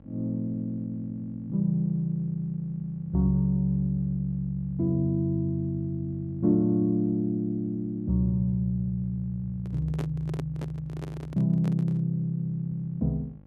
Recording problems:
hum; 50 Hz, harmonics up to 850 Hz, SNR 24 dB
handling noise; from 9.5 to 12 s; peak -5 dB vs average level

